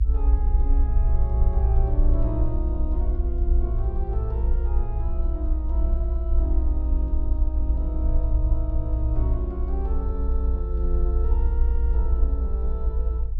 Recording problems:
rumble; below 60 Hz, SNR -9 dB

